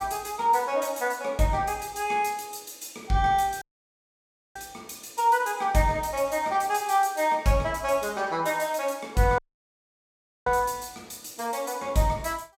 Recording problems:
dropout; at 3.5 s for 1 s and at 9.5 s for 1 s

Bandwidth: 16.5 kHz